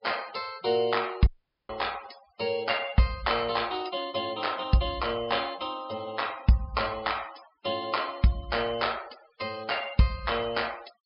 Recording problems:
treble cut off; nothing above 5.5 kHz
noise reduction artefacts; signal-to-artefact ratio 19 dB
audio cutting out; at 1.5 s

